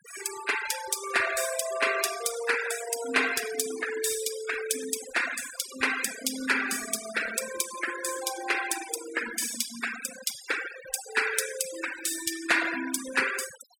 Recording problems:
noise reduction artefacts; signal-to-artefact ratio 7 dB

